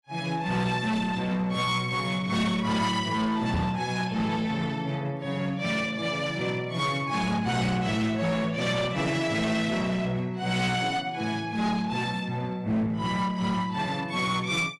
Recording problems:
codec artefacts; AAC, log-spectral distance 2 dB, nothing above 11 kHz
distorted audio; hard clipping, uneven, signal-to-distortion ratio 10 dB
knock on the microphone; at 3.5 s; peak +1 dB vs average level

